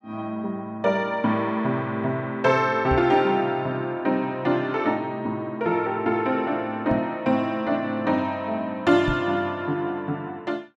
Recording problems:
microphone bump; at 3 s, at 7 s and at 9 s; peak 0 dB vs average level

